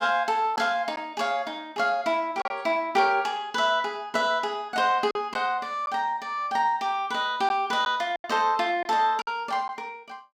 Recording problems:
lost packets; 3% of the sound replaced, filled with silence

